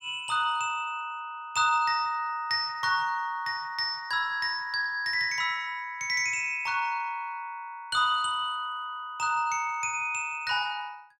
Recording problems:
none

